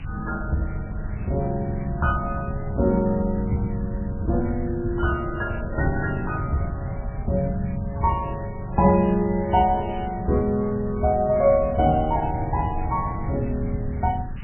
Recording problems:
codec artefacts; MP3, log-spectral distance 9 dB, nothing above 2.5 kHz
background hiss; SNR 23 dB
wind on the microphone; below 130 Hz, SNR 7 dB

